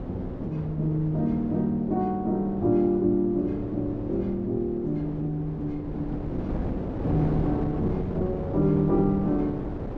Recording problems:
wind on the microphone; below 380 Hz, SNR 8 dB

